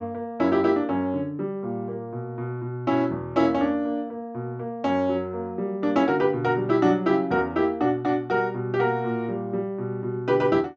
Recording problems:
treble cut off; nothing above 8 kHz

